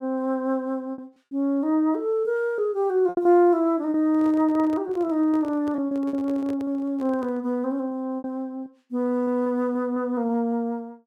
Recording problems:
packet loss; 7% of the sound replaced, filled with repeated pitch periods
microphone handling noise; from 4 to 7.5 s; peak -11 dB vs average level

